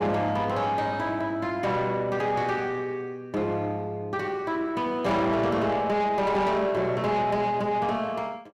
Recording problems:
distortion; soft clipping, signal-to-distortion ratio 11 dB

